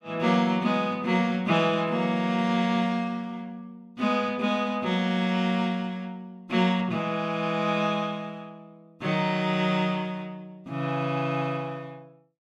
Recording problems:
none

